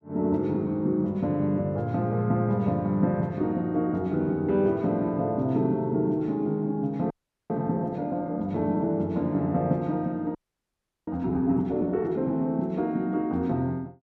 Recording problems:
frozen audio; at 7 s and at 10 s for 0.5 s

